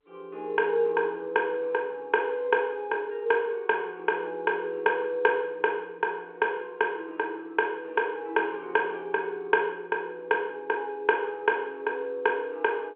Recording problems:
phone line; 240 Hz to 3.4 kHz, G.711

